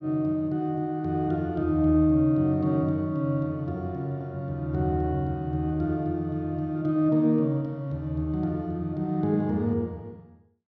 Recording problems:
none

